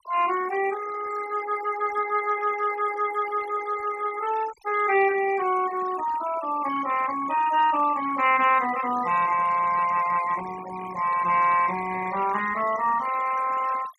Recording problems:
noise reduction artefacts; signal-to-artefact ratio 15 dB

